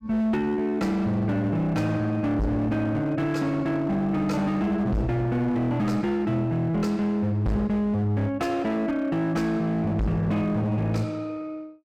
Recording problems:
distortion; hard clipping, signal-to-distortion ratio 7 dB

